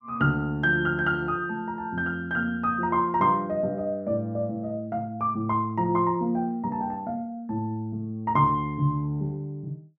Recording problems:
none

